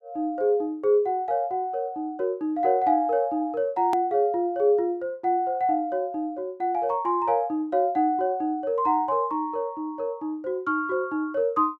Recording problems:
click at an edit; at 4 s

